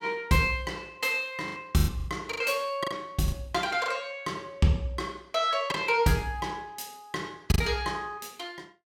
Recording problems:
lost packets; 7% of the sound replaced, filled with the last packet

